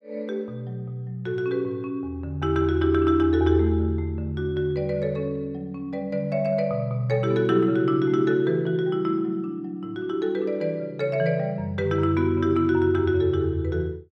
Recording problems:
none

